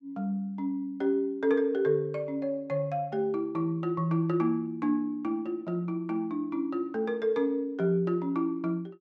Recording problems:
none

